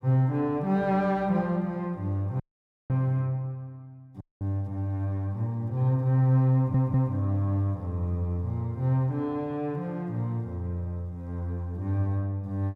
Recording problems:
audio cutting out; at 2.5 s for 0.5 s and at 4 s
stutter; at 6.5 s

